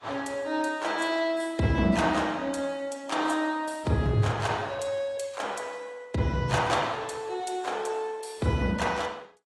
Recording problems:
lossy codec; AAC, log-spectral distance 3 dB, nothing above 11 kHz

